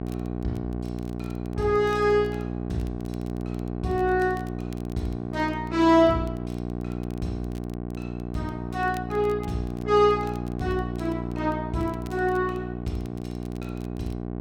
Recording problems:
mains hum; 60 Hz, harmonics up to 1.1 kHz, SNR 6 dB
crackling; vinyl, SNR 29 dB

